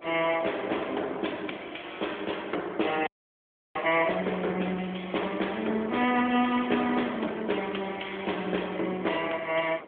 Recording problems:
telephone audio; 260 Hz to 3.4 kHz, AMR-NB
wind on the microphone; below 840 Hz, SNR 16 dB
frozen audio; at 3 s for 0.5 s

